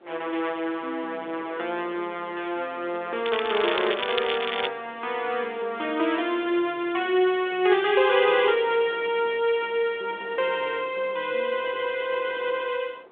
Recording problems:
telephone audio; 300 Hz to 3.6 kHz, G.726
wind on the microphone; below 820 Hz, SNR 21 dB
crackle; from 3.5 to 4.5 s; loose cable, SNR 6 dB

